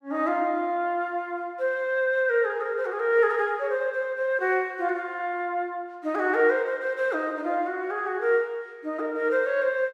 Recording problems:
none

